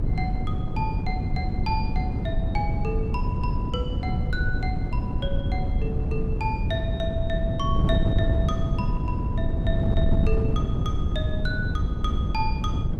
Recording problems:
wind noise; below 150 Hz, SNR -7 dB

